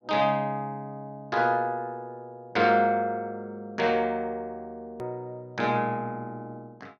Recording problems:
click at an edit; at 5 s

